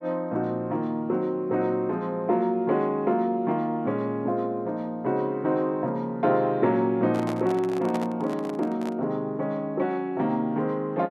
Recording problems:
handling noise; from 7 to 9 s; peak -4 dB vs average level

